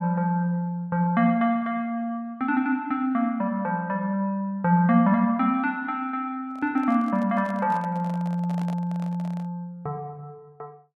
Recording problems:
microphone handling noise; from 6.5 to 9.5 s; peak -11 dB vs average level

